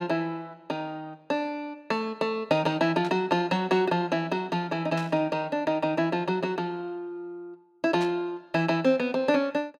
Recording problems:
burst of static; at 3 s, at 5 s and at 8 s; peak -9 dB vs average level

